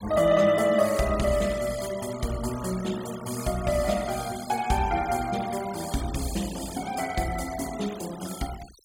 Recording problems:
denoising artefacts; signal-to-artefact ratio 15 dB

